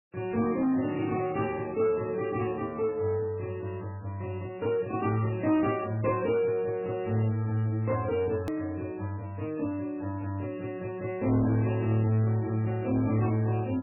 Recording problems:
lossy codec; MP3, log-spectral distance 2 dB, nothing above 2.4 kHz
distortion; soft clipping, signal-to-distortion ratio 12 dB
edit click; at 8.5 s

